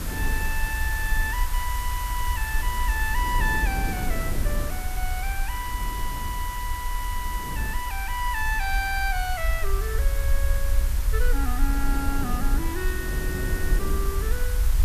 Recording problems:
background hiss; SNR 6 dB
low-frequency rumble; below 56 Hz, SNR -1 dB
wind on the microphone; below 290 Hz, SNR 7 dB

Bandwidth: 14.5 kHz